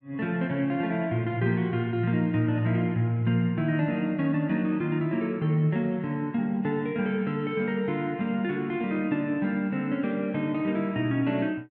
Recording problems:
none

